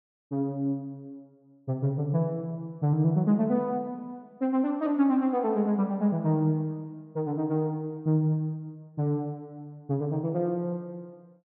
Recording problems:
none

